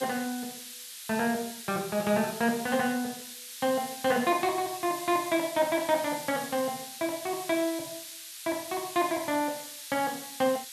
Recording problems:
hiss; SNR 10 dB

